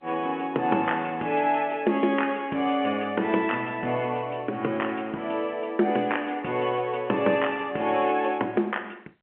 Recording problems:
telephone audio; 240 Hz to 3.2 kHz, G.711

